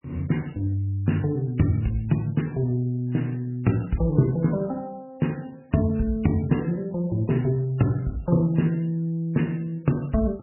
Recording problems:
lossy compression; MP3, log-spectral distance 3 dB, nothing above 2.9 kHz

